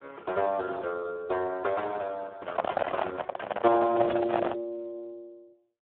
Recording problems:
phone line; 300 Hz to 2 kHz, Speex
handling noise; from 2.5 to 4.5 s; peak +7 dB vs average level

